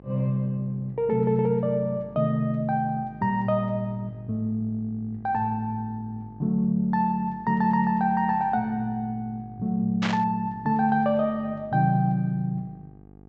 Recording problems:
low-pass filter; nothing above 8 kHz
electrical hum; 50 Hz, harmonics up to 900 Hz, SNR 23 dB
static burst; at 10 s; peak +1 dB vs average level

